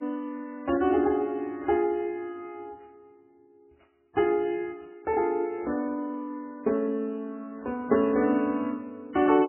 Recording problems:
lossy compression; MP3, log-spectral distance 2 dB, nothing above 3 kHz

